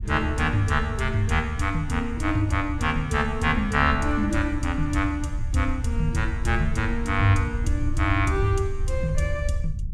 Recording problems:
rumble; below 78 Hz, SNR 7 dB

